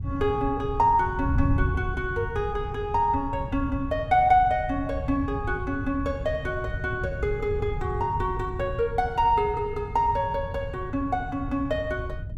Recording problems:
wind noise; below 120 Hz, SNR 7 dB

